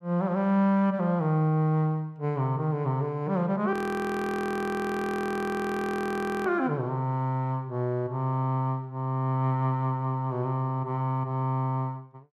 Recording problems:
frozen audio; at 3.5 s for 2.5 s

